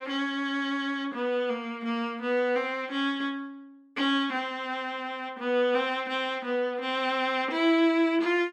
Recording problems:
none

